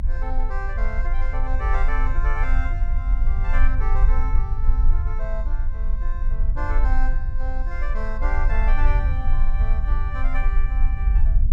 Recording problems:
low-frequency rumble; below 44 Hz, strongest tone 22 Hz, SNR -9 dB

